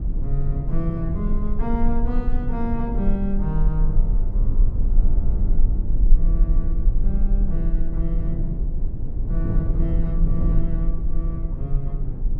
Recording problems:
low-frequency rumble; below 38 Hz, SNR -4 dB
wind noise; below 160 Hz, SNR 0 dB

